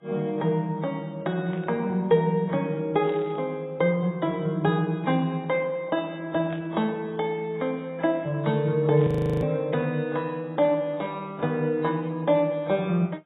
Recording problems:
lossy codec; AAC, log-spectral distance 2 dB, nothing above 3.4 kHz
burst of static; 5 times, first at 1.5 s; peak -16 dB vs average level
frozen audio; at 9 s

